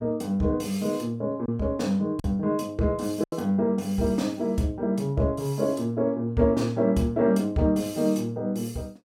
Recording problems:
lost packets; 1.6% of the sound replaced, filled with silence

